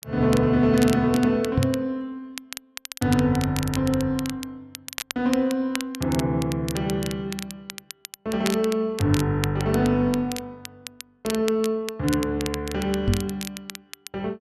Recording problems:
crackle; vinyl, SNR 12 dB
knock on the microphone; at 1.5 s and at 13 s; peak +5 dB vs average level

